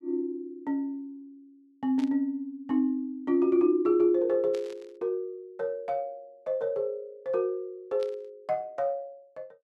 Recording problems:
burst of static; at 2 s, at 4.5 s and at 8 s; peak -13 dB vs average level

